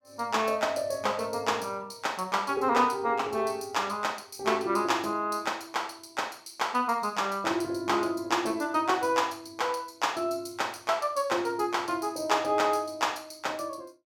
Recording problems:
none

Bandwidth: 17.5 kHz